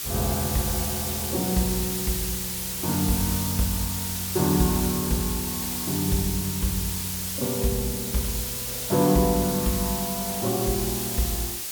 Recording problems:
background hiss; slope +2 dB per octave, SNR 1 dB

